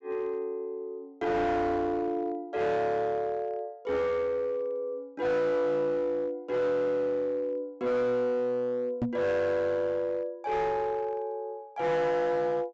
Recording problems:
treble missing; nothing above 8 kHz
distorted audio; hard clipping, uneven, signal-to-distortion ratio 11 dB
microphone bump; at 9 s; peak +3 dB vs average level

